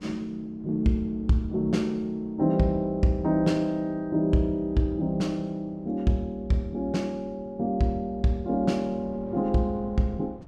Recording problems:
wind on the microphone; below 370 Hz, SNR 22 dB

